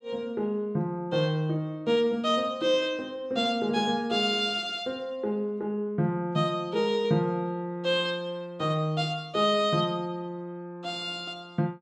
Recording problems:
none

